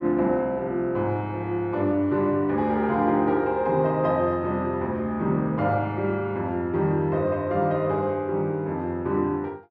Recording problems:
none

